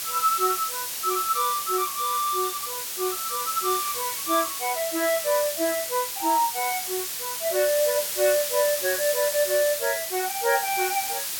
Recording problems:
hiss; slope +2 dB per octave, SNR 2 dB

